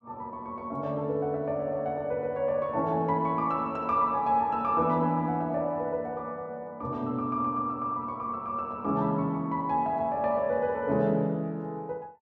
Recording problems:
none

